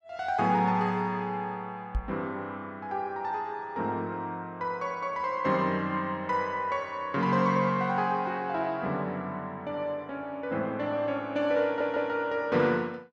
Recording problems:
microphone bump; at 2 s; peak +2 dB vs average level
audio stuttering; at 12 s

